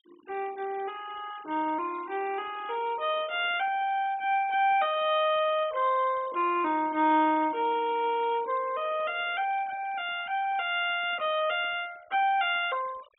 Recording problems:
treble missing; nothing above 4 kHz
noise reduction artefacts; signal-to-artefact ratio 21 dB

